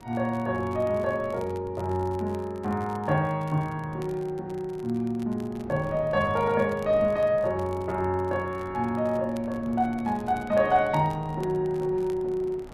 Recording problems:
wind on the microphone; below 580 Hz, SNR 21 dB
crackling; vinyl, SNR 27 dB

